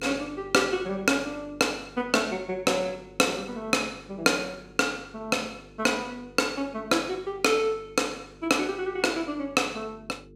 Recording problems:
hum; 50 Hz, harmonics up to 450 Hz, SNR 23 dB

